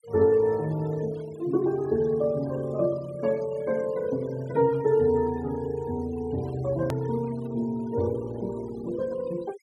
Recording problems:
noise reduction artefacts; signal-to-artefact ratio 22 dB
click at an edit; at 7 s

